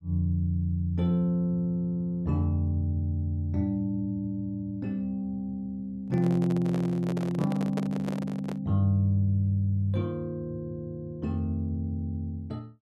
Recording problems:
microphone handling noise; from 6 to 8.5 s; peak -2 dB vs average level

